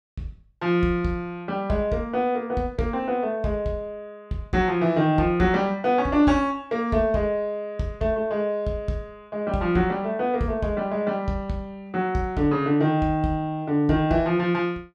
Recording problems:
none

